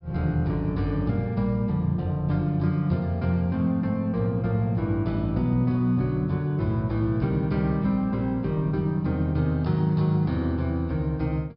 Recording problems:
treble missing; nothing above 5.3 kHz

